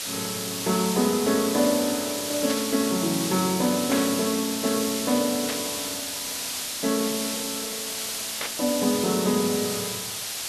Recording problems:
lossy compression; MP2, log-spectral distance 2 dB
hiss; slope +2 dB per octave, SNR 3 dB
static burst; 4 times, first at 2.5 s; peak -2 dB vs average level

